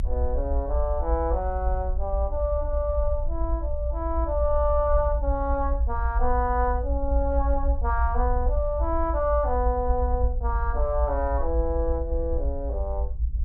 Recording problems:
low-frequency rumble; below 62 Hz, SNR 0 dB

